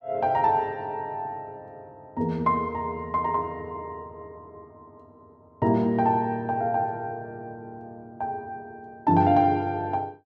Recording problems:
none

